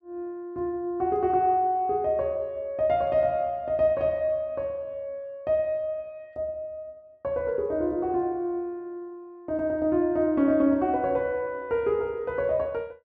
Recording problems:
none

